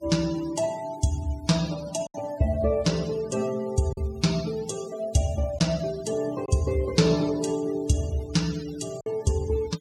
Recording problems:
noise reduction artefacts; signal-to-artefact ratio 16 dB
packet loss; 1.9% of the sound replaced, filled with silence

